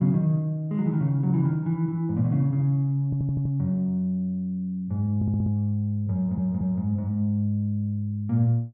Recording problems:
stutter; at 3 s, at 5 s and at 6 s

